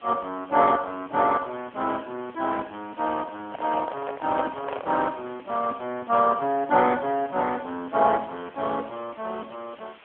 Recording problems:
telephone audio; 240 Hz to 3.4 kHz, AMR-NB
hiss; SNR 25 dB
handling noise; from 3.5 to 5 s; peak -1 dB vs average level

